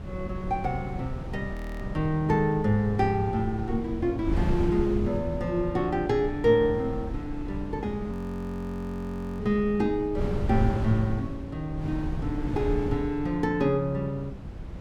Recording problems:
wind on the microphone; below 180 Hz, SNR 7 dB
audio freezing; at 1.5 s and at 8 s for 1.5 s

